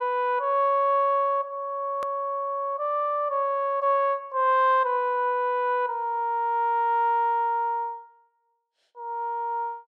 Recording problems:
edit click; at 2 s

